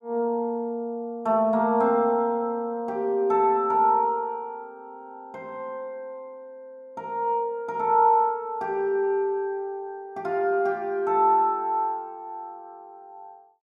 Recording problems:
none

